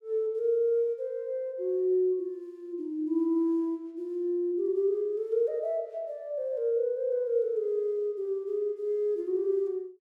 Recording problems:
none

